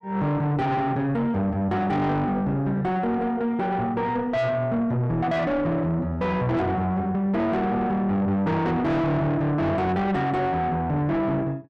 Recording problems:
distorted audio; soft clipping, signal-to-distortion ratio 6 dB

